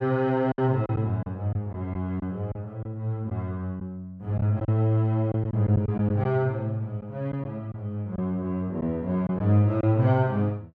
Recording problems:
packet loss; 5% of the sound replaced, filled with silence

